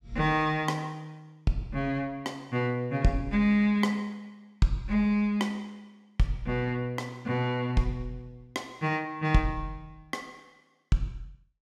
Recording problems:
none

